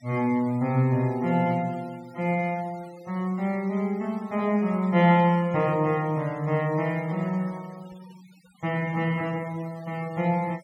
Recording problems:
noise reduction artefacts; signal-to-artefact ratio 25 dB

